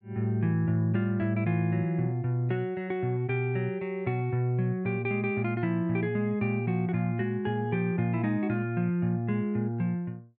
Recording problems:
none

